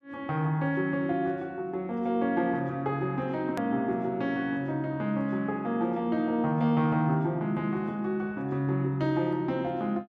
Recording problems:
click at an edit; at 3.5 s

